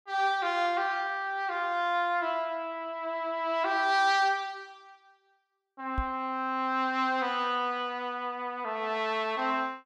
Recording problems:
knock on the microphone; at 6 s; peak 0 dB vs average level

